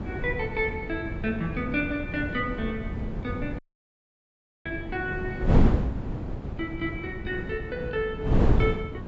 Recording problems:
treble cut off; nothing above 8 kHz
wind on the microphone; below 240 Hz, SNR -1 dB
dropout; at 3.5 s for 1 s

